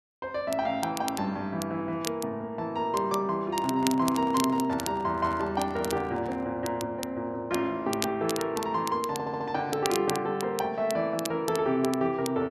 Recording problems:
crackle; vinyl, SNR 11 dB
microphone handling noise; from 3.5 to 6.5 s; peak -8 dB vs average level
audio stuttering; at 9 s

